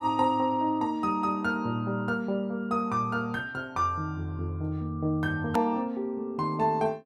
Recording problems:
hard cut with a click; at 5.5 s

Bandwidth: 14 kHz